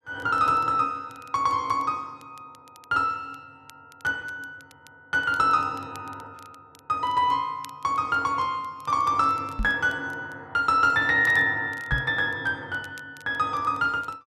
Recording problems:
crackling; vinyl, SNR 30 dB
microphone bump; at 9.5 s and at 12 s; peak 0 dB vs average level

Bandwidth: 13 kHz